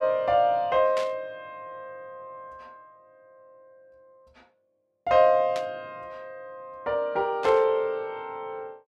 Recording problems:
static burst; at 1 s, at 5.5 s and at 7.5 s; peak -8 dB vs average level

